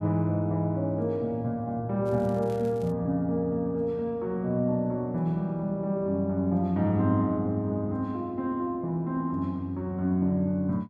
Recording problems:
crackling; at 2 s; loose cable, SNR 28 dB

